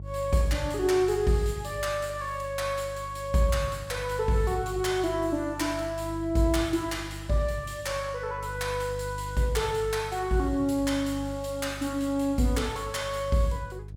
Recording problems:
electrical hum; 50 Hz, harmonics up to 350 Hz, SNR 12 dB

